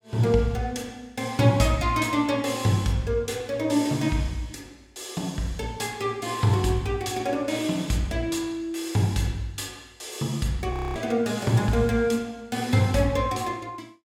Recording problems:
frozen audio; at 11 s

